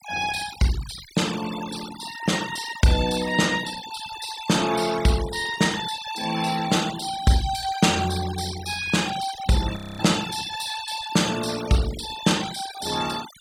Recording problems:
denoising artefacts; signal-to-artefact ratio 12 dB
audio freezing; at 10 s

